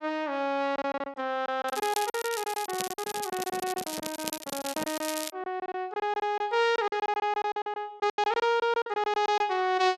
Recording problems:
packet loss; 16% of the sound replaced, filled with silence
crackle; from 1.5 to 5.5 s; loose cable, SNR 7 dB
microphone handling noise; from 2.5 to 5 s; peak -5 dB vs average level

